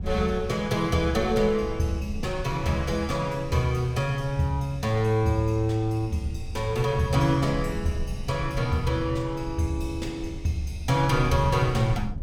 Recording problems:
low-frequency rumble; below 96 Hz, SNR 12 dB

